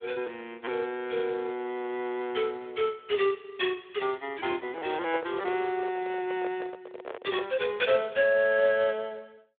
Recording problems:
phone line; 280 Hz to 3.6 kHz, Speex
microphone handling noise; from 4.5 to 7.5 s; peak -3 dB vs average level

